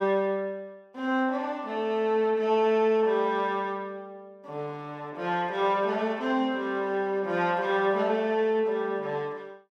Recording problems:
none

